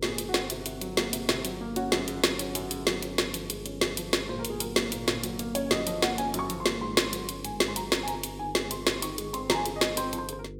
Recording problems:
hum; 50 Hz, harmonics up to 500 Hz, SNR 14 dB

